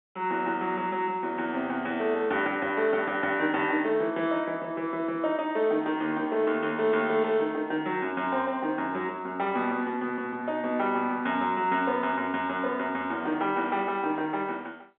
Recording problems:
phone line; 220 Hz to 3.6 kHz, G.711

